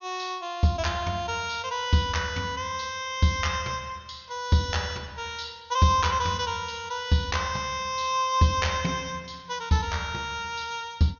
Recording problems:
treble missing; nothing above 6.7 kHz

